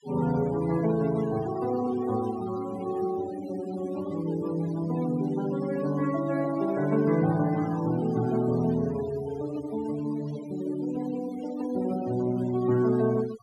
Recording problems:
denoising artefacts; signal-to-artefact ratio 17 dB

